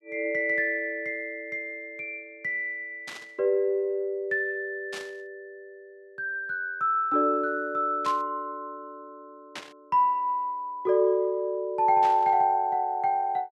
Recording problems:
burst of static; 5 times, first at 3 s; peak -7 dB vs average level

